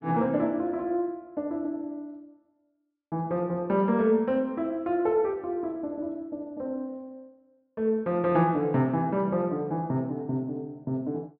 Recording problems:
low-pass filter; nothing above 5.5 kHz

